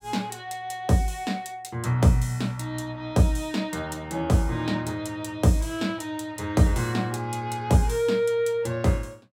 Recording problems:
none

